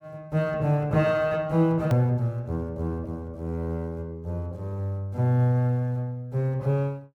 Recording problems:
click at an edit; at 2 s

